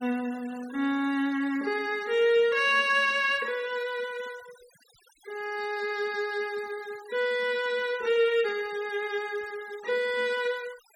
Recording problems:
noise reduction artefacts; signal-to-artefact ratio 22 dB

